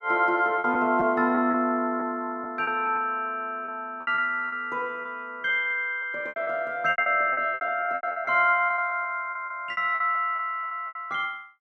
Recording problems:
lost packets; 12% of the sound replaced, filled with repeated pitch periods

